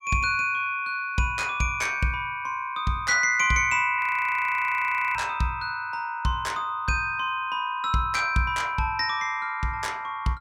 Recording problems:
frozen audio; at 4 s for 1 s

